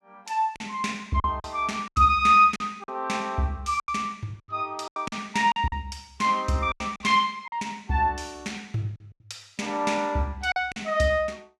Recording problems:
packet loss; 9% of the sound replaced, filled with silence

